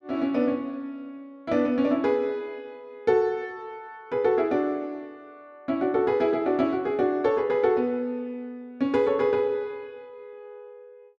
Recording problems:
none

